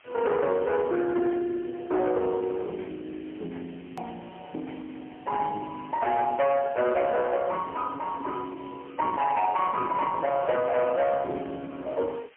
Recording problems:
telephone audio; 280 Hz to 3.2 kHz, AMR-NB, then MP3
distorted audio; hard clipping, uneven, signal-to-distortion ratio 12 dB
hiss; SNR 26 dB
click at an edit; at 4 s

